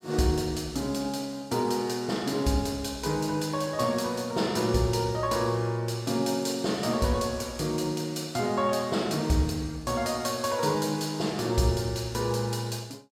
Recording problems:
none

